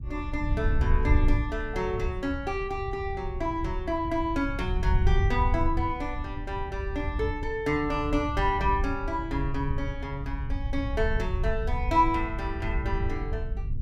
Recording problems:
wind noise; below 82 Hz, SNR 2 dB

